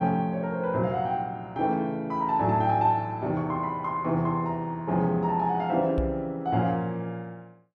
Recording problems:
knock on the microphone; at 6 s; peak +1 dB vs average level

